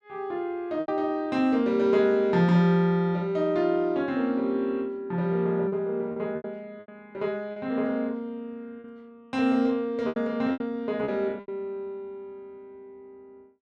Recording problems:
lost packets; 5% of the sound replaced, filled with repeated pitch periods

